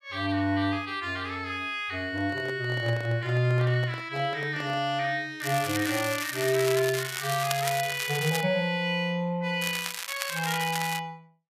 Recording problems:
handling noise; from 2 to 5 s; peak -8 dB vs average level
crackling; from 5.5 to 8.5 s and from 9.5 to 11 s; loose cable, SNR 6 dB

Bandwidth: 14.5 kHz